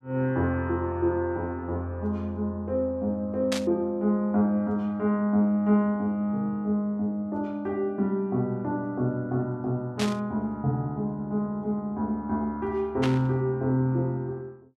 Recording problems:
static burst; at 3.5 s, at 10 s and at 13 s; peak 0 dB vs average level

